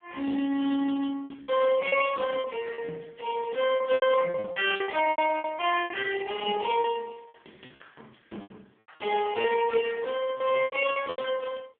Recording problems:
phone line; 220 Hz to 3.3 kHz, AMR-NB
lost packets; 13% of the sound replaced, filled with repeated pitch periods

